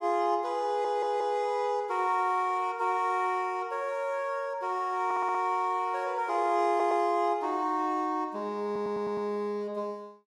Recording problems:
audio stuttering; 4 times, first at 0.5 s

